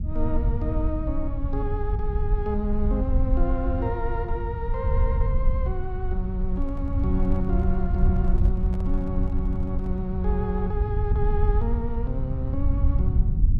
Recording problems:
low-frequency rumble; below 76 Hz, SNR -4 dB
microphone handling noise; from 6.5 to 10 s; peak -10 dB vs average level

